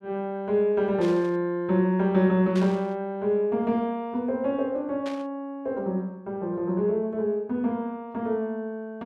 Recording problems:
static burst; at 1 s, at 2.5 s and at 5 s; peak -9 dB vs average level

